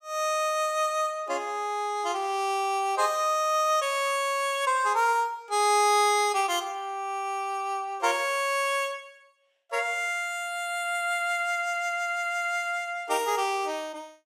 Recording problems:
none

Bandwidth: 16.5 kHz